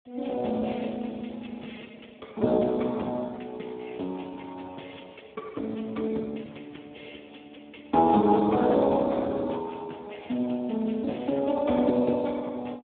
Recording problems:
telephone audio; 170 Hz to 2.2 kHz, Speex

